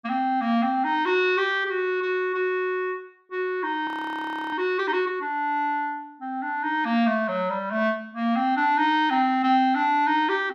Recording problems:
frozen audio; at 4 s for 0.5 s

